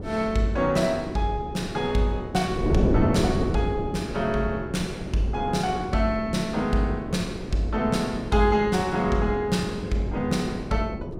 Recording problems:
wind on the microphone; below 390 Hz, SNR 6 dB

